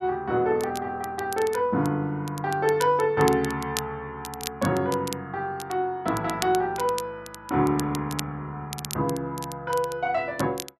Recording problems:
crackle; vinyl, SNR 12 dB

